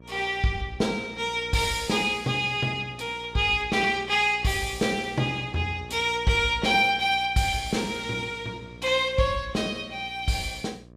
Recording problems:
electrical hum; 60 Hz, harmonics up to 1.2 kHz, SNR 21 dB

